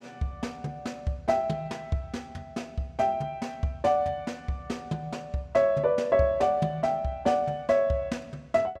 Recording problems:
none

